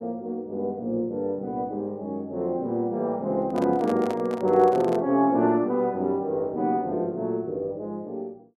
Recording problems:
handling noise; from 3.5 to 5 s; peak -5 dB vs average level

